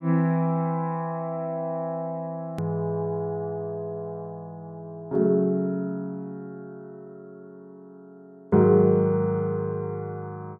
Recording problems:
click at an edit; at 2.5 s

